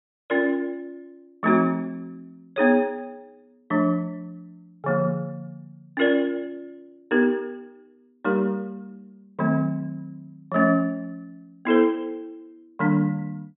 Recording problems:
treble missing; nothing above 4 kHz

